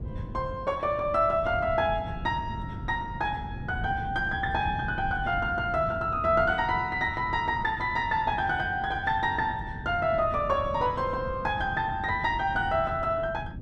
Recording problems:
wind on the microphone; below 180 Hz, SNR 11 dB

